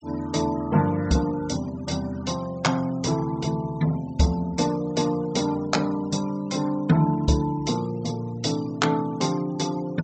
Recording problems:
treble cut off; nothing above 8 kHz
denoising artefacts; signal-to-artefact ratio 21 dB

